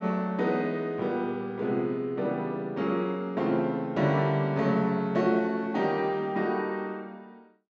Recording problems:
treble cut off; nothing above 8 kHz

